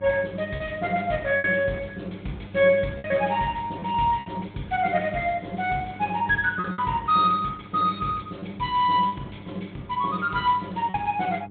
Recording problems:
treble cut off; nothing above 3.8 kHz
lossy compression; Opus, log-spectral distance 4 dB
hum; 50 Hz, harmonics up to 800 Hz, SNR 18 dB
packet loss; 5% of the sound replaced, filled with repeated pitch periods

